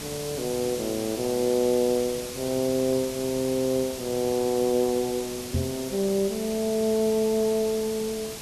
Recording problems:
background hiss; SNR 10 dB
microphone bump; at 5.5 s; peak +2 dB vs average level

